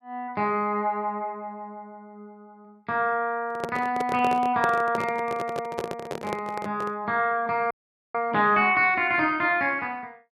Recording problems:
handling noise; from 3.5 to 7 s; peak 0 dB vs average level
dropout; at 7.5 s

